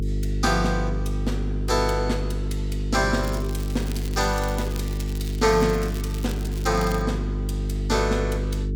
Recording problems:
hum; 50 Hz, harmonics up to 450 Hz, SNR 2 dB
crackle; from 3 to 7 s; loose cable, SNR 15 dB

